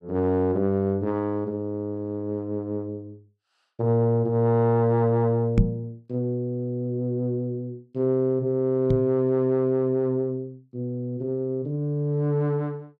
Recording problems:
knock on the microphone; at 5.5 s and at 9 s; peak +8 dB vs average level

